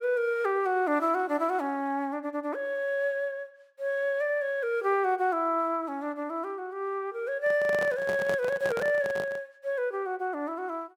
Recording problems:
microphone handling noise; from 7.5 to 9.5 s; peak -2 dB vs average level

